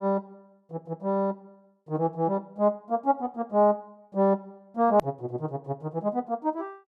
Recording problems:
hard cut with a click; at 5 s

